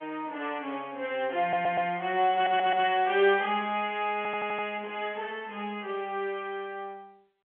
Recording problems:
phone line; 240 Hz to 3.3 kHz, G.711
stutter; at 1.5 s, at 2.5 s and at 4 s

